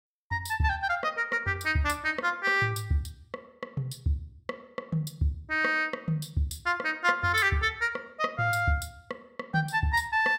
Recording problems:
none

